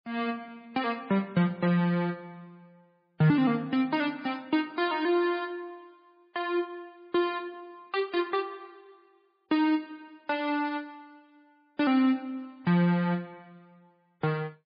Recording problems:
lossy compression; MP3, log-spectral distance 2 dB

